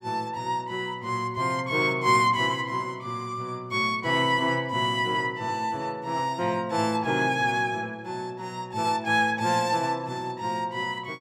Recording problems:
none

